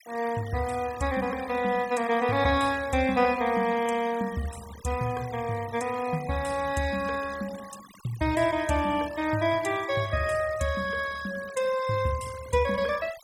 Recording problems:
noise reduction artefacts; signal-to-artefact ratio 17 dB

